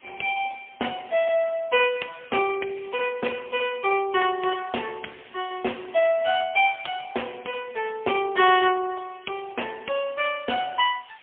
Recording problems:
telephone audio; 300 Hz to 3.3 kHz, AMR-NB, then MP3
background hiss; SNR 28 dB

